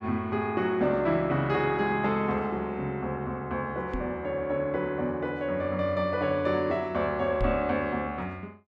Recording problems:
microphone thump; at 4 s and at 7.5 s; peak +1 dB vs average level

